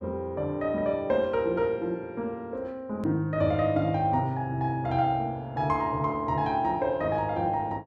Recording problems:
edit click; at 3 s

